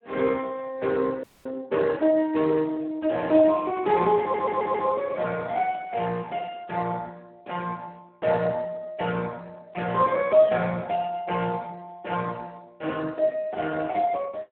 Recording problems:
phone line; 260 Hz to 2.8 kHz, Speex
audio freezing; at 1 s
stutter; at 4 s

